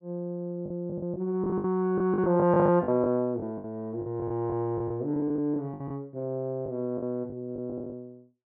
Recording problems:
lost packets; 13% of the sound replaced, filled with the last packet

